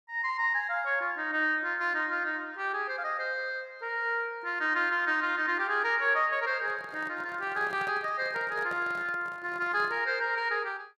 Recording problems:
handling noise; from 6.5 to 10 s; peak -10 dB vs average level

